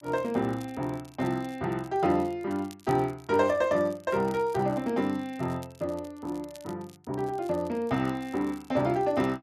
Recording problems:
crackle; vinyl, SNR 25 dB

